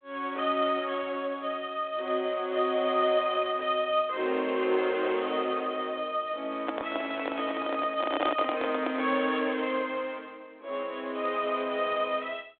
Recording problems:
phone line; 240 Hz to 3.7 kHz, G.726
microphone handling noise; from 6.5 to 9 s; peak +3 dB vs average level

